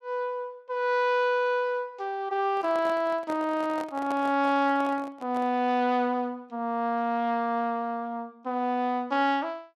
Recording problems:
handling noise; from 2.5 to 5.5 s; peak -6 dB vs average level

